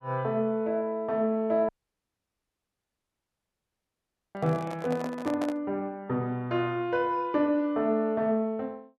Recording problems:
audio cutting out; at 1.5 s for 2.5 s
microphone handling noise; from 4.5 to 5.5 s; peak -4 dB vs average level

